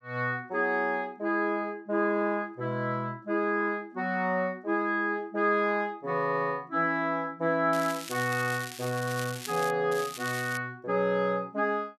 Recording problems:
crackling; from 7.5 to 9.5 s and at 10 s; loose cable, SNR 12 dB

